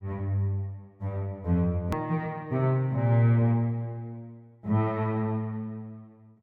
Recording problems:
click at an edit; at 2 s

